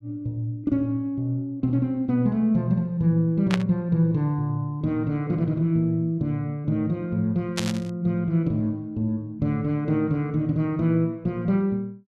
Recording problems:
static burst; at 3.5 s and at 7.5 s; peak +1 dB vs average level

